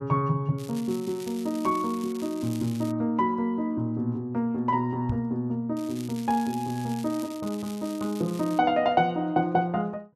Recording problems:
crackling; from 0.5 to 3 s and from 6 to 8.5 s; loose cable, SNR 18 dB
microphone bump; at 5 s; peak 0 dB vs average level

